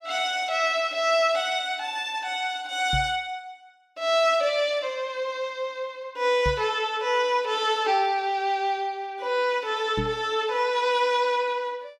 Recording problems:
microphone thump; at 3 s, at 6.5 s and at 10 s; peak -1 dB vs average level

